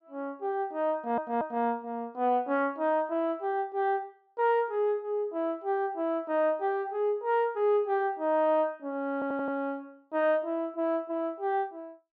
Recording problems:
treble missing; nothing above 8 kHz
stutter; at 1 s and at 9 s

